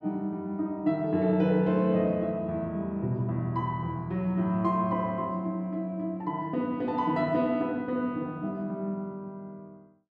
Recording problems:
none

